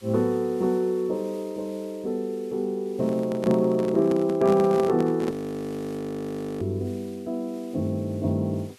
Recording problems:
hiss; SNR 27 dB
handling noise; from 3 to 5.5 s; peak -1 dB vs average level
frozen audio; at 5.5 s for 1.5 s

